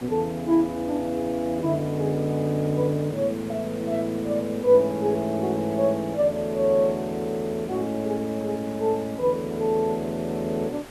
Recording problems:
background hiss; slope -5 dB per octave, SNR 18 dB

